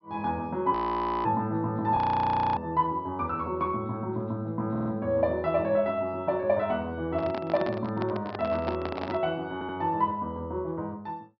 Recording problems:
treble missing; nothing above 5.5 kHz
audio freezing; at 0.5 s for 0.5 s and at 2 s for 0.5 s
audio stuttering; at 4.5 s and at 9.5 s
microphone handling noise; from 7 to 9 s; peak -1 dB vs average level

